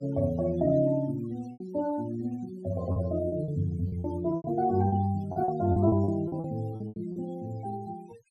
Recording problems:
denoising artefacts; signal-to-artefact ratio 22 dB
lost packets; 10% of the sound replaced, filled with repeated pitch periods

